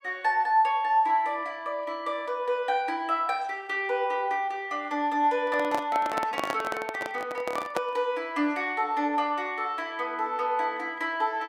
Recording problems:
handling noise; from 5.5 to 8 s; peak +1 dB vs average level

